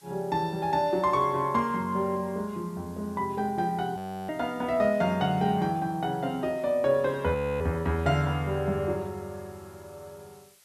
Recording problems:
hiss; slope +1 dB per octave, SNR 28 dB
frozen audio; at 4 s and at 7.5 s

